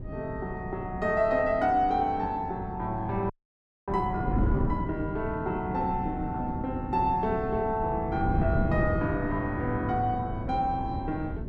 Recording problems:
wind noise; below 220 Hz, SNR 5 dB
audio freezing; at 3.5 s for 0.5 s

